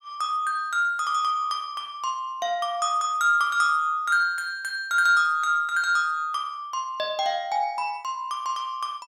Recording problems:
none

